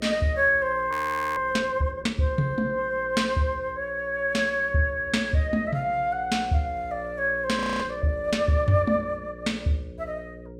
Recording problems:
electrical hum; 60 Hz, harmonics up to 540 Hz, SNR 18 dB
frozen audio; at 1 s and at 7.5 s

